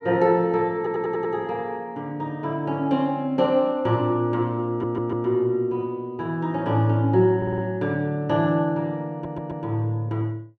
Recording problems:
stutter; 4 times, first at 1 s

